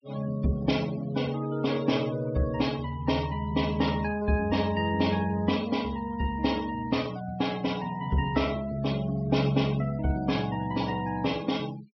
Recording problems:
treble missing; nothing above 5.5 kHz
denoising artefacts; signal-to-artefact ratio 19 dB

